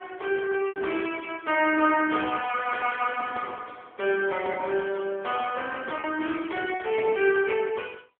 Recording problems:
phone line; 260 Hz to 3.3 kHz, AMR-NB
packet loss; 2% of the sound replaced, filled with repeated pitch periods

